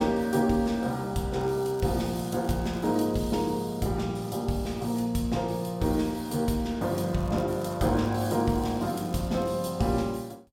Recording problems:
crackling; from 1.5 to 3.5 s and from 7 to 9.5 s; loose cable, SNR 25 dB

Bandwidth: 16.5 kHz